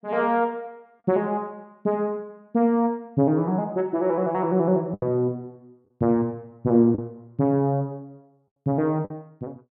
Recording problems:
packet loss; 2% of the sound replaced, filled with the last packet

